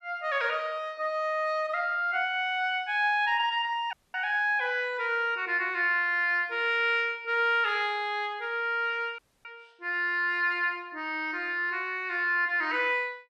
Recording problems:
audio cutting out; at 4 s and at 9 s

